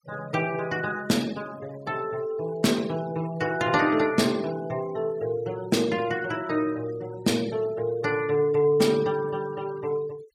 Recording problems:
noise reduction artefacts; signal-to-artefact ratio 20 dB

